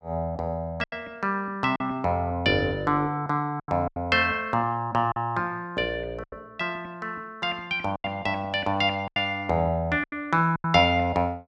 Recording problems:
packet loss; 6% of the sound replaced, filled with silence

